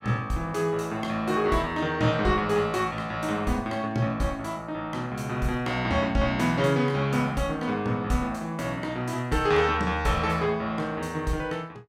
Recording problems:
none

